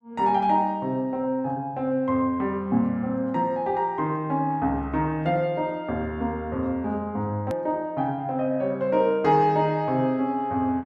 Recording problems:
hard cut with a click; at 7.5 s

